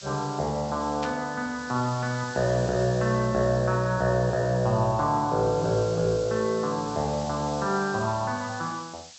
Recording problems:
treble missing; nothing above 8 kHz
background hiss; slope +3 dB per octave, SNR 17 dB
burst of static; at 1 s; peak -7 dB vs average level

